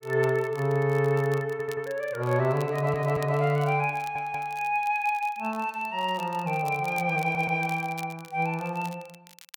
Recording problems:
crackle; vinyl, SNR 23 dB
audio stuttering; 4 times, first at 1.5 s

